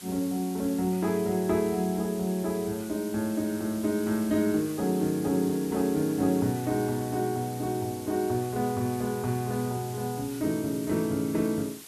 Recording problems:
background hiss; slope +1 dB per octave, SNR 15 dB

